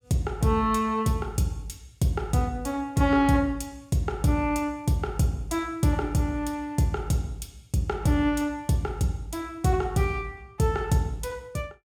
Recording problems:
none

